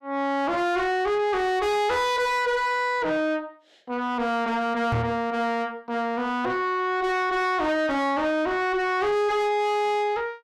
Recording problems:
distorted audio; soft clipping, signal-to-distortion ratio 6 dB
microphone bump; at 5 s; peak +3 dB vs average level

